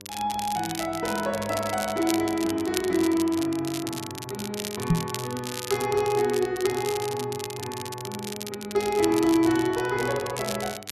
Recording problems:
electrical hum; 50 Hz, harmonics up to 1.1 kHz, SNR 23 dB
crackling; vinyl, SNR 9 dB
microphone bump; at 5 s; peak +8 dB vs average level

